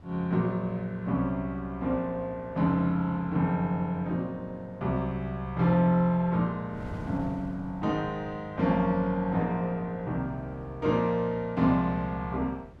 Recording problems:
wind on the microphone; below 340 Hz, SNR 20 dB

